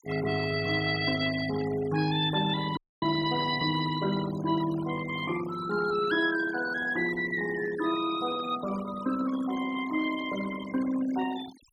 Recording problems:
denoising artefacts; signal-to-artefact ratio 13 dB
frozen audio; at 3 s

